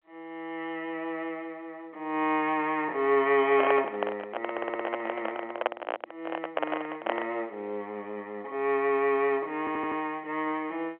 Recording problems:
telephone audio; 320 Hz to 3.3 kHz, G.711
handling noise; from 3.5 to 7.5 s; peak +7 dB vs average level
audio stuttering; at 4.5 s and at 9.5 s

